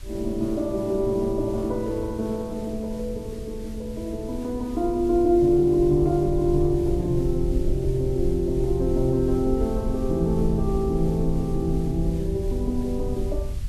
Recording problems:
hiss; slope +1 dB per octave, SNR 25 dB
low-frequency rumble; below 68 Hz, SNR 8 dB

